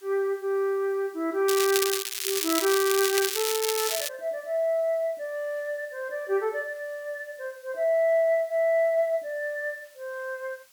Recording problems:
hiss; slope +2 dB per octave, SNR 27 dB
crackle; from 1.5 to 4 s; loose cable, SNR 1 dB

